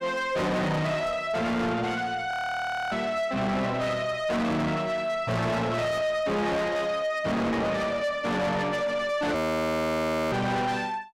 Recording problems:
distortion; soft clipping, signal-to-distortion ratio 6 dB
audio freezing; at 2.5 s for 0.5 s and at 9.5 s for 1 s

